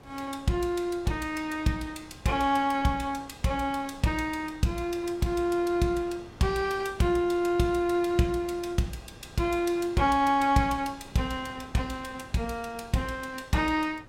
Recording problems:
wind noise; below 720 Hz, SNR 21 dB

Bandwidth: 16 kHz